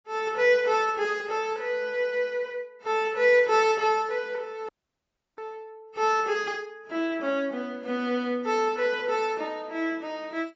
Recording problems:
codec artefacts; AAC, log-spectral distance 2 dB, nothing above 7.6 kHz
dropout; at 4.5 s for 0.5 s

